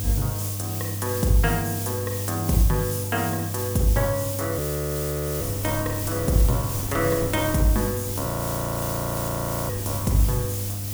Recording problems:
mains hum; 50 Hz, harmonics up to 500 Hz, SNR 6 dB
background hiss; slope +6 dB per octave, SNR 5 dB
wind on the microphone; below 360 Hz, SNR 13 dB
audio freezing; at 4.5 s for 1 s and at 8.5 s for 1.5 s

